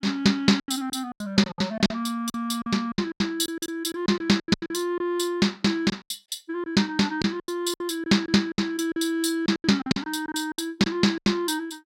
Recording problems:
lost packets; 15% of the sound replaced, filled with silence

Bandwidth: 16 kHz